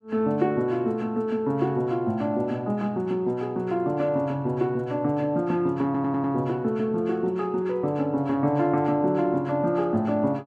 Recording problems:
stutter; at 6 s

